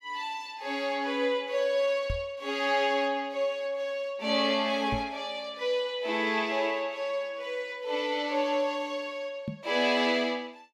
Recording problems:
microphone thump; at 2 s, at 5 s and at 9.5 s; peak -1 dB vs average level

